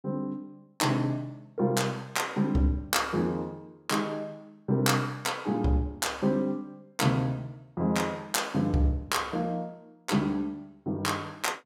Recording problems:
none

